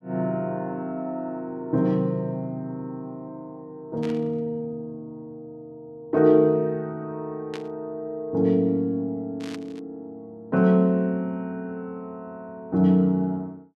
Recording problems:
static burst; at 4 s, at 7.5 s and at 9.5 s; peak -9 dB vs average level

